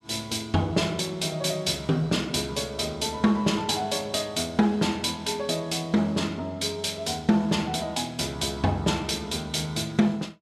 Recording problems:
none

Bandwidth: 14.5 kHz